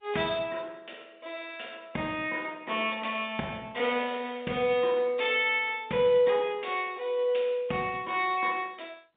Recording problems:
telephone audio; 150 Hz to 3.7 kHz, G.711

